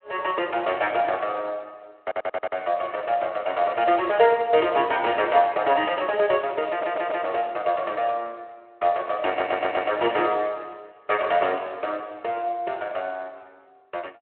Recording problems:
phone line; 280 Hz to 3.3 kHz, Speex
audio stuttering; at 2 s, at 6.5 s and at 9.5 s

